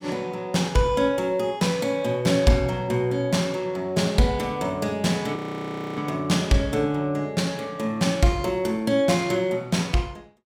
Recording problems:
audio freezing; at 5.5 s for 0.5 s

